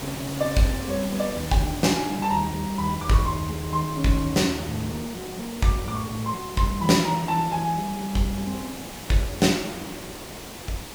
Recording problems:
background hiss; SNR 11 dB

